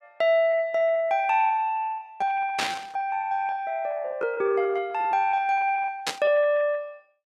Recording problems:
packet loss; 17% of the sound replaced, filled with repeated pitch periods
static burst; at 2.5 s and at 6 s; peak +2 dB vs average level

